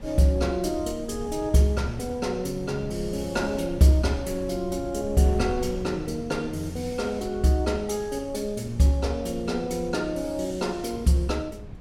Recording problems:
wind on the microphone; below 150 Hz, SNR 14 dB

